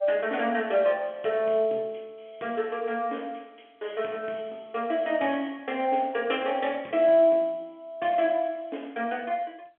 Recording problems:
phone line; 260 Hz to 3.4 kHz, G.711

